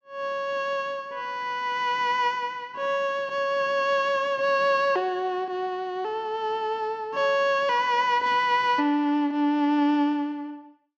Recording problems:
none

